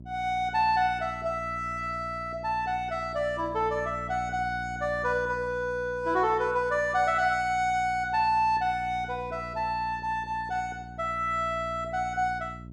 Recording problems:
mains hum; 60 Hz, harmonics up to 600 Hz, SNR 16 dB

